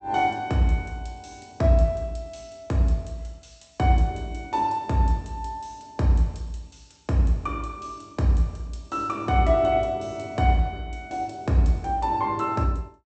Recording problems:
treble cut off; nothing above 8 kHz

